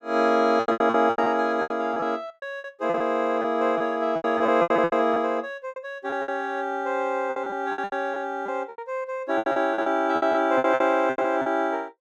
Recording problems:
lost packets; 17% of the sound replaced, filled with repeated pitch periods

